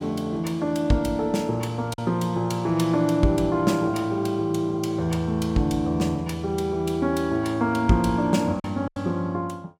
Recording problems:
lost packets; 1.6% of the sound replaced, filled with silence

